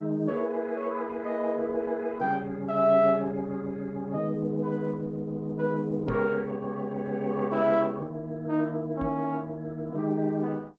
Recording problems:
lossy compression; G.722, then Opus, log-spectral distance 2 dB
microphone thump; at 6 s and at 9 s; peak -1 dB vs average level

